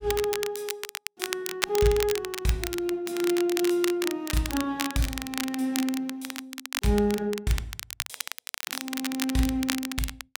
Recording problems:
crackling; vinyl, SNR 6 dB

